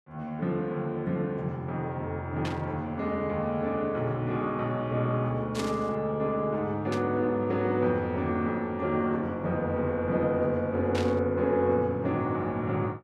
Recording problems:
static burst; 4 times, first at 2.5 s; peak -3 dB vs average level

